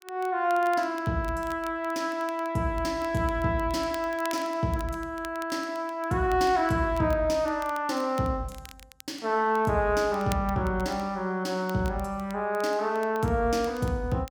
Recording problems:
crackling; vinyl, SNR 22 dB

